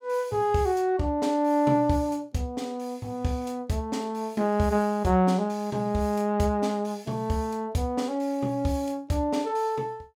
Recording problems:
none

